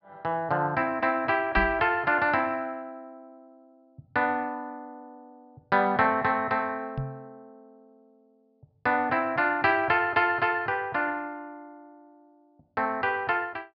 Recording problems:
treble missing; nothing above 5.5 kHz
microphone thump; at 1.5 s and at 7 s; peak -1 dB vs average level

